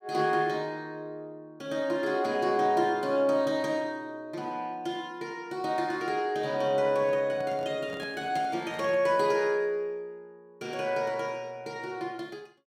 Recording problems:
handling noise; from 7 to 9.5 s; peak -9 dB vs average level

